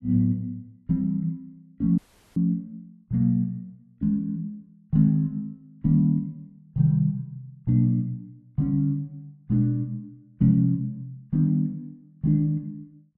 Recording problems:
dropout; at 2 s

